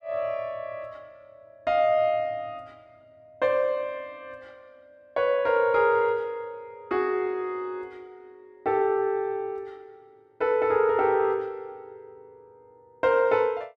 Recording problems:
none

